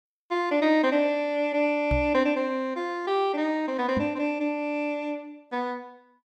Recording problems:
knock on the microphone; at 2 s and at 4 s; peak +1 dB vs average level

